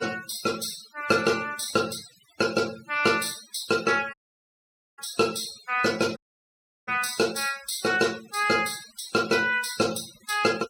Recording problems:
noise reduction artefacts; signal-to-artefact ratio 16 dB
audio cutting out; at 4 s for 1 s and at 6 s for 0.5 s

